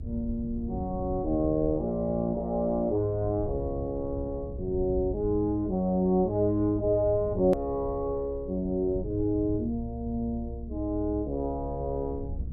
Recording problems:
low-frequency rumble; below 100 Hz, SNR 11 dB
hard cut with a click; at 7.5 s

